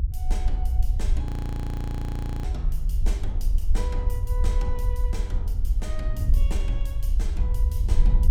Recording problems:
low-frequency rumble; below 58 Hz, SNR -10 dB
wind noise; below 56 Hz, SNR -4 dB
audio freezing; at 1.5 s for 1 s

